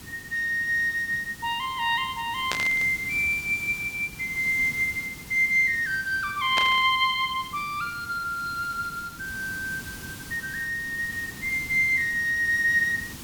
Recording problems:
hiss; SNR 16 dB
static burst; at 2.5 s and at 6.5 s; peak +1 dB vs average level

